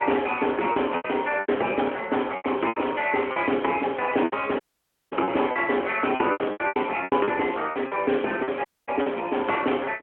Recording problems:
phone line; 280 Hz to 3.2 kHz, AMR-NB
packet loss; 12% of the sound replaced, filled with repeated pitch periods
audio cutting out; at 4.5 s for 0.5 s and at 8.5 s

